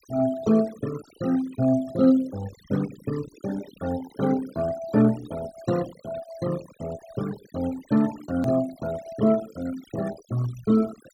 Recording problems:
denoising artefacts; signal-to-artefact ratio 17 dB
edit click; at 8.5 s

